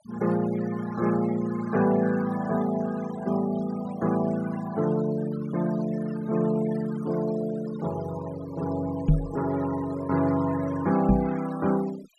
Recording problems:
noise reduction artefacts; signal-to-artefact ratio 16 dB
knock on the microphone; at 9 s and at 11 s; peak +10 dB vs average level

